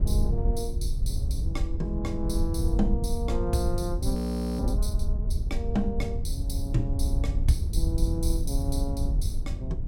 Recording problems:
rumble; below 86 Hz, SNR 0 dB
wind noise; below 72 Hz, SNR -1 dB
frozen audio; at 4 s

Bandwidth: 16.5 kHz